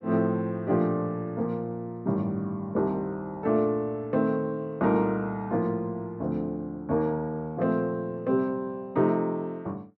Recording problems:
none

